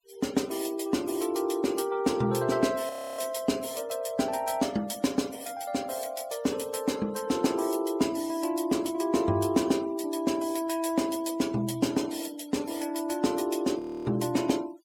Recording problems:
noise reduction artefacts; signal-to-artefact ratio 20 dB
frozen audio; at 3 s and at 14 s

